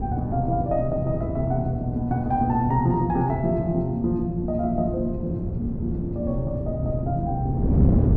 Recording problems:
wind noise; below 220 Hz, SNR 3 dB

